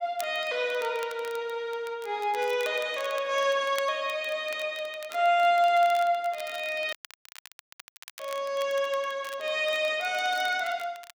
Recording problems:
crackle; vinyl, SNR 20 dB
dropout; at 7 s for 1.5 s

